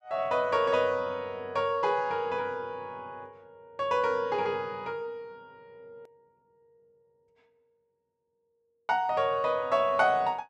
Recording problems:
click at an edit; at 6 s

